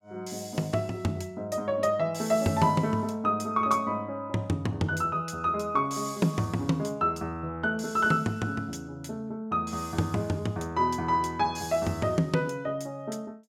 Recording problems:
none

